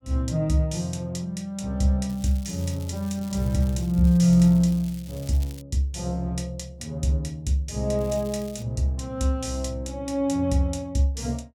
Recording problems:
crackling; from 2 to 5.5 s and at 8 s; loose cable, SNR 22 dB

